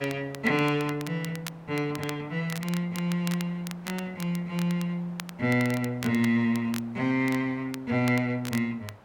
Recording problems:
background hiss; SNR 24 dB
crackling; vinyl, SNR 14 dB

